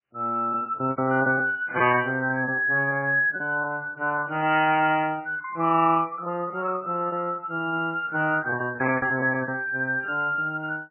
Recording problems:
lossy compression; MP3, log-spectral distance 2 dB, nothing above 2.7 kHz
lost packets; 14% of the sound replaced, filled with repeated pitch periods

